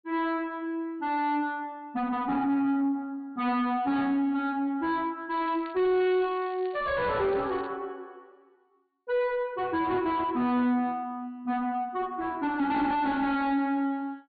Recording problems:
low-pass filter; nothing above 4.5 kHz
distorted audio; soft clipping, signal-to-distortion ratio 6 dB
crackle; from 5.5 to 7.5 s; loose cable, SNR 27 dB

